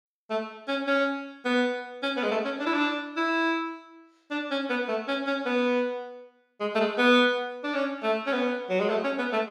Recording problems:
none

